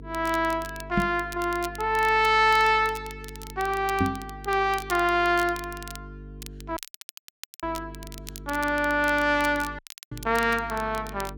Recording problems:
hum; 50 Hz, harmonics up to 450 Hz, SNR 18 dB
crackling; vinyl, SNR 19 dB
microphone bump; at 1 s, at 4 s and at 10 s; peak +3 dB vs average level
audio cutting out; at 7 s for 1 s and at 10 s

